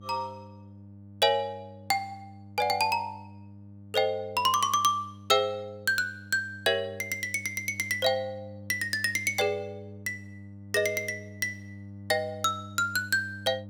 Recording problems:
hum; 50 Hz, harmonics up to 600 Hz, SNR 18 dB

